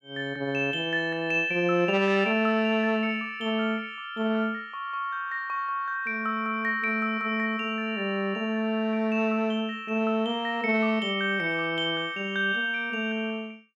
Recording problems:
none

